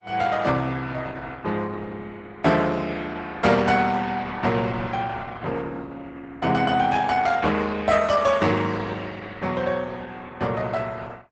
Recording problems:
codec artefacts; Opus, log-spectral distance 4 dB, nothing above 8 kHz

